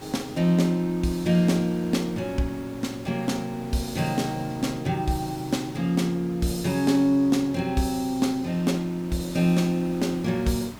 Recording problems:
background hiss; slope -5 dB per octave, SNR 18 dB

